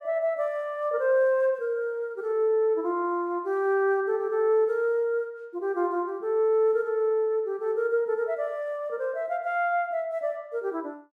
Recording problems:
none

